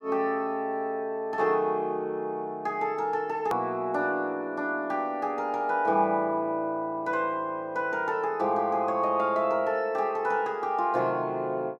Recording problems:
edit click; at 3.5 s

